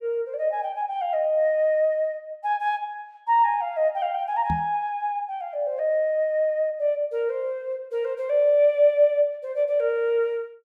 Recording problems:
microphone bump; at 4.5 s; peak -2 dB vs average level

